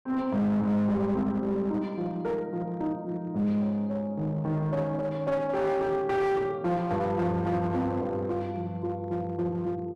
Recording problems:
distortion; hard clipping, uneven, signal-to-distortion ratio 11 dB

